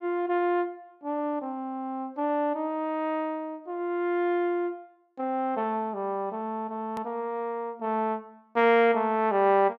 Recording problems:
edit click; at 7 s

